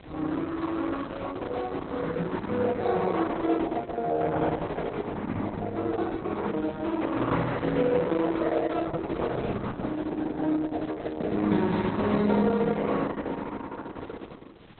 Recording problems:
lossy codec; Opus, log-spectral distance 4 dB, nothing above 4 kHz
wind noise; below 1.1 kHz, SNR 19 dB

